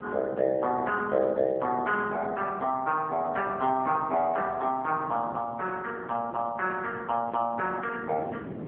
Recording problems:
phone line; 260 Hz to 3.4 kHz, AMR-NB
wind noise; below 450 Hz, SNR 16 dB

